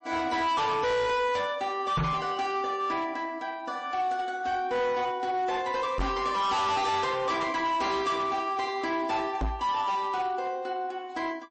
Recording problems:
lossy codec; MP3, log-spectral distance 2 dB, nothing above 8.2 kHz
distorted audio; hard clipping, uneven, signal-to-distortion ratio 8 dB
microphone bump; at 2 s, at 6 s and at 9.5 s; peak +3 dB vs average level

